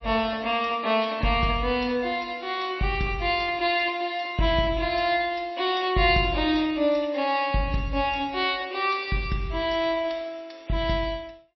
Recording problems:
lossy compression; MP3, log-spectral distance 3 dB, nothing above 4.9 kHz

